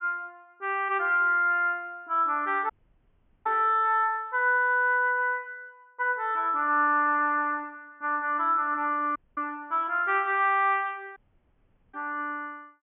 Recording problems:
treble missing; nothing above 3.4 kHz
dropout; at 2.5 s for 1 s, at 9 s and at 11 s for 1 s

